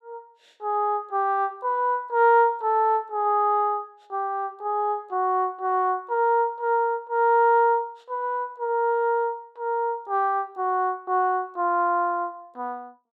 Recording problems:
none

